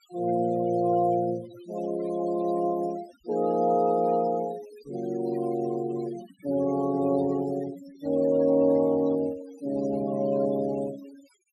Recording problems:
noise reduction artefacts; signal-to-artefact ratio 19 dB

